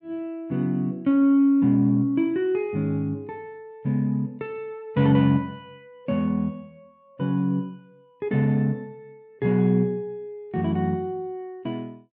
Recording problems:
none

